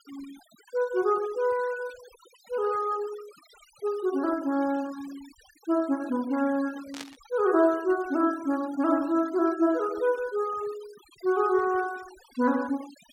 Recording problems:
denoising artefacts; signal-to-artefact ratio 21 dB
burst of static; at 7 s; peak -7 dB vs average level

